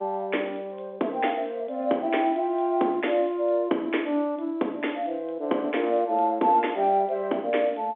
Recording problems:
telephone audio; 220 Hz to 3.8 kHz, G.711

